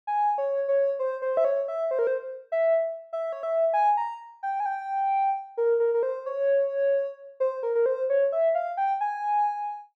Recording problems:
none

